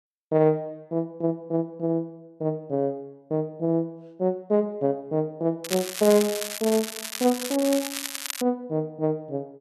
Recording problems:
crackling; from 5.5 to 8.5 s; loose cable, SNR 6 dB

